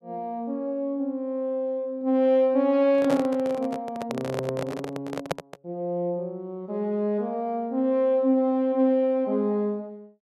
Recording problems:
microphone handling noise; from 3 to 5.5 s; peak +2 dB vs average level

